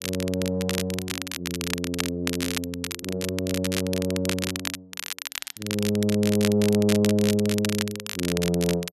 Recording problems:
crackle; vinyl, SNR 6 dB

